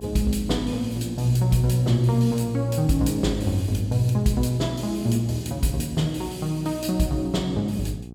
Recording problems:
electrical hum; 60 Hz, harmonics up to 780 Hz, SNR 15 dB

